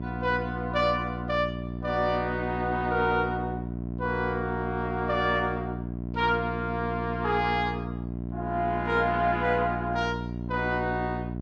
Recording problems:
hum; 60 Hz, harmonics up to 720 Hz, SNR 6 dB

